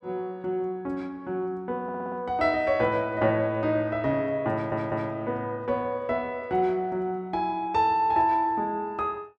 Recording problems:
stutter; at 2 s and at 4.5 s

